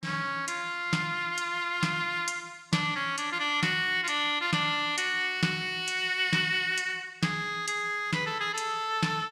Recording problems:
none

